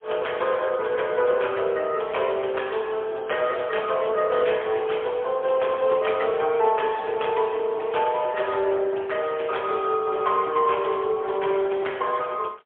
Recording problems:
telephone audio; 320 Hz to 3.4 kHz, AMR-NB, then MP3

